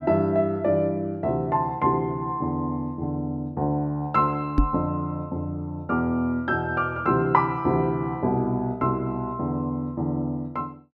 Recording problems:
microphone bump; at 4.5 s; peak +7 dB vs average level

